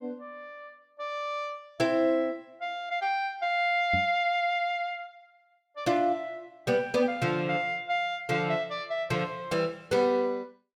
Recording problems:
knock on the microphone; at 4 s; peak -2 dB vs average level

